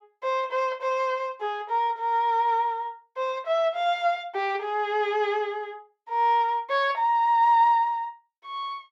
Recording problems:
none

